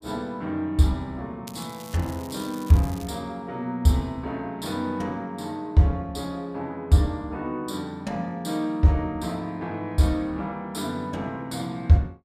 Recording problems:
crackling; from 1.5 to 3 s; loose cable, SNR 19 dB

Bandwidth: 15 kHz